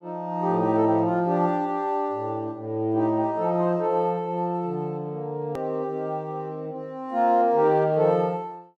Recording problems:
click at an edit; at 5.5 s

